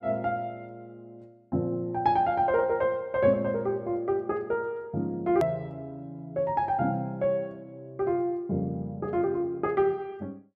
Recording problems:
edit click; at 5.5 s

